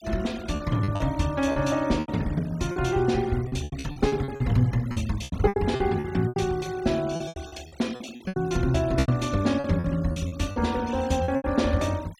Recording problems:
denoising artefacts; signal-to-artefact ratio 20 dB
packet loss; 14% of the sound replaced, filled with repeated pitch periods

